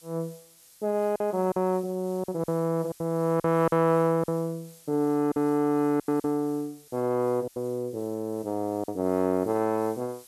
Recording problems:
hiss; slope +2 dB per octave, SNR 24 dB
lost packets; 7% of the sound replaced, filled with silence

